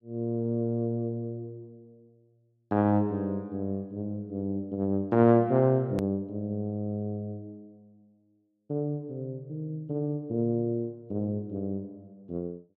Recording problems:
edit click; at 6 s

